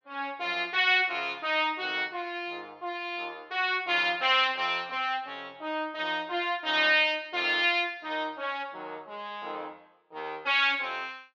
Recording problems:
treble cut off; nothing above 8 kHz

